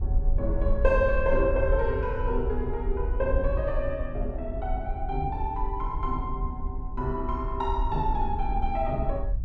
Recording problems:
wind on the microphone; below 60 Hz, SNR 3 dB

